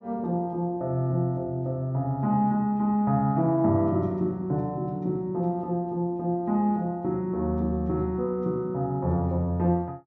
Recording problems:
none

